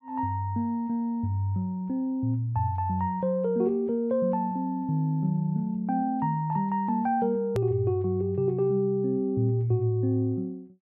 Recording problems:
edit click; at 7.5 s

